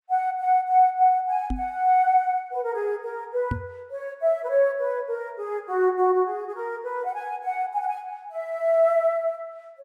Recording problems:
microphone bump; at 1.5 s and at 3.5 s; peak 0 dB vs average level

